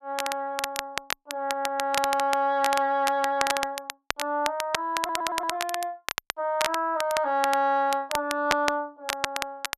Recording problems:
crackling; vinyl, SNR 5 dB
audio stuttering; at 1.5 s and at 5 s

